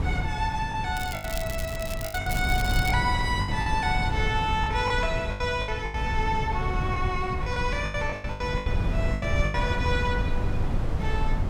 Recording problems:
wind on the microphone; below 140 Hz, SNR 1 dB
packet loss; 10% of the sound replaced, filled with the last packet
crackle; from 1 to 3 s; loose cable, SNR 10 dB

